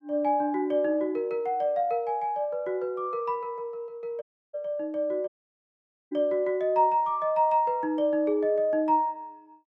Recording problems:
audio cutting out; at 4 s and at 5.5 s for 1 s

